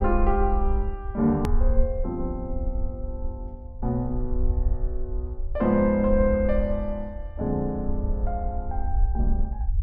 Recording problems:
rumble; below 58 Hz, SNR 3 dB
hard cut with a click; at 1.5 s

